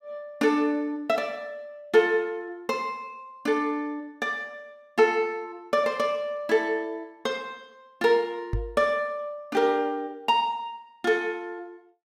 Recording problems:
knock on the microphone; at 8.5 s; peak +1 dB vs average level

